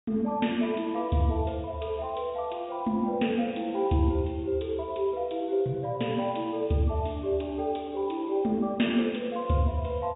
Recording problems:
treble cut off; nothing above 4 kHz

